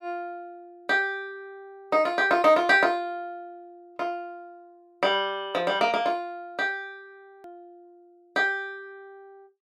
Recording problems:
edit click; at 7.5 s

